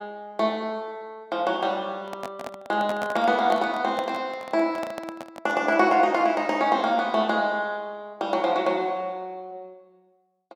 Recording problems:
handling noise; from 2 to 6 s; peak -2 dB vs average level

